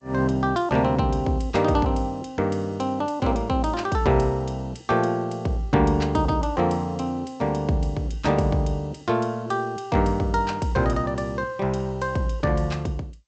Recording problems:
lossy compression; G.722, log-spectral distance 2 dB, nothing above 7.8 kHz

